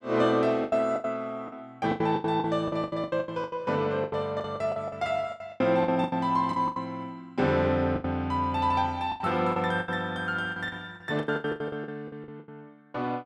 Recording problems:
lost packets; 18% of the sound replaced, filled with the last packet

